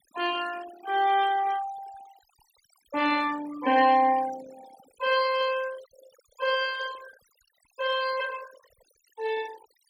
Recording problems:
noise reduction artefacts; signal-to-artefact ratio 17 dB

